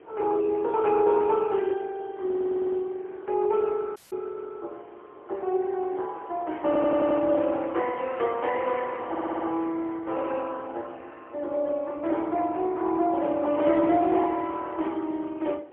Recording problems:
telephone audio; 280 Hz to 3.3 kHz, AMR-NB, then MP3
wind noise; below 750 Hz, SNR 23 dB
audio stuttering; at 2.5 s, at 6.5 s and at 9 s
dropout; at 4 s

